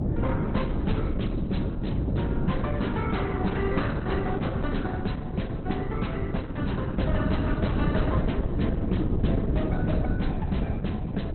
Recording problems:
lossy compression; Opus, log-spectral distance 3 dB, nothing above 4.1 kHz
wind on the microphone; below 260 Hz, SNR -4 dB

